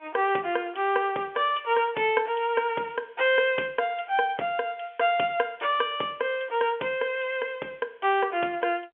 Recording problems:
telephone audio; 300 Hz to 3.4 kHz, G.711

